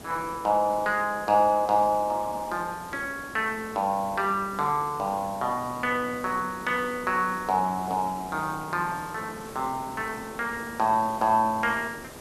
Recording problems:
background hiss; SNR 16 dB

